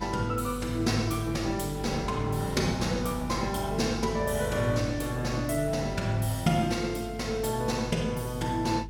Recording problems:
hum; 50 Hz, harmonics up to 400 Hz, SNR 12 dB
wind on the microphone; below 1 kHz, SNR 20 dB

